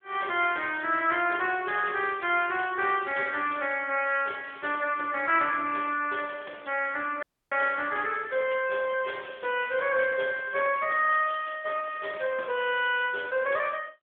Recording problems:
phone line; 340 Hz to 3.4 kHz, AMR-NB
dropout; at 7 s

